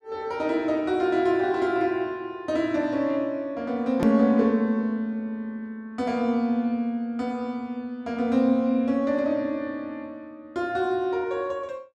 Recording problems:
hard cut with a click; at 4 s

